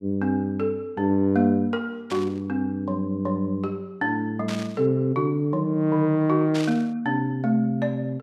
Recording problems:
static burst; at 2 s, at 4.5 s and at 6.5 s; peak -6 dB vs average level

